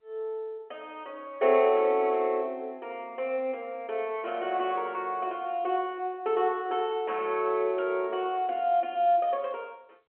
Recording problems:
telephone audio; 220 Hz to 3.3 kHz, G.711

